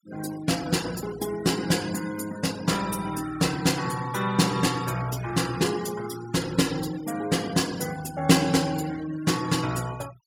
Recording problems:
denoising artefacts; signal-to-artefact ratio 15 dB

